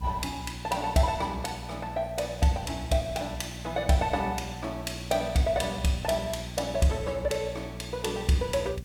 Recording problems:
electrical hum; 60 Hz, harmonics up to 540 Hz, SNR 12 dB
hiss; slope -1 dB per octave, SNR 28 dB

